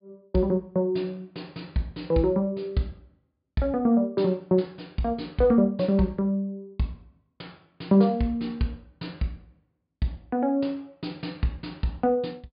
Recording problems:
treble cut off; nothing above 5 kHz

